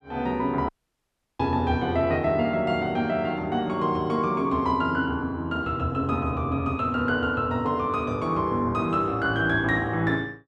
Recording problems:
audio cutting out; at 0.5 s for 0.5 s

